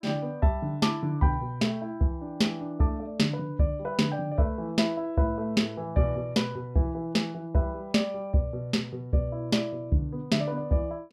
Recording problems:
none

